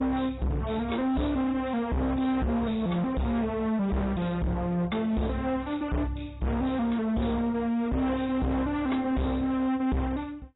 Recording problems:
codec artefacts; AAC, log-spectral distance 4 dB, nothing above 3.8 kHz
distorted audio; hard clipping, signal-to-distortion ratio 6 dB

